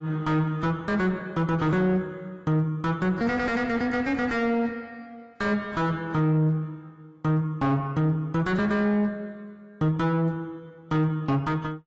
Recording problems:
lossy codec; AAC, log-spectral distance 2 dB, nothing above 7.6 kHz
distortion; soft clipping, signal-to-distortion ratio 6 dB

